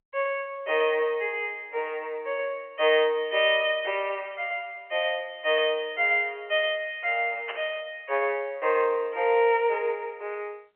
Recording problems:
telephone audio; 340 Hz to 3.2 kHz, G.711
static burst; at 7.5 s; peak -4 dB vs average level

